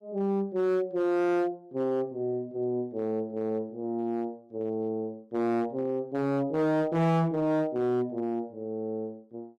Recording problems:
distorted audio; hard clipping, signal-to-distortion ratio 10 dB

